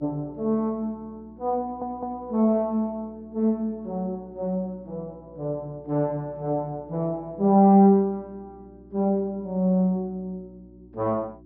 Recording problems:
low-pass filter; nothing above 5.5 kHz
electrical hum; 60 Hz, harmonics up to 360 Hz, SNR 25 dB
stutter; at 1.5 s

